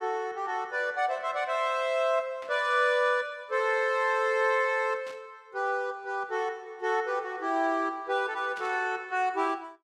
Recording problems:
burst of static; at 2.5 s, at 5 s and at 8.5 s; peak -14 dB vs average level

